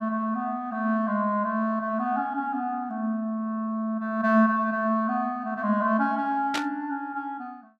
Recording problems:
static burst; at 6.5 s; peak +1 dB vs average level

